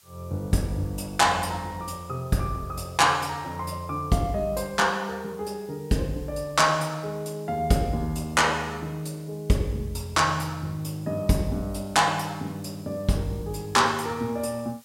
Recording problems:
hiss; slope +2 dB per octave, SNR 27 dB

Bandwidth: 16 kHz